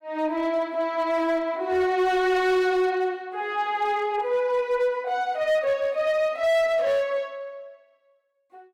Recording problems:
distortion; hard clipping, signal-to-distortion ratio 11 dB

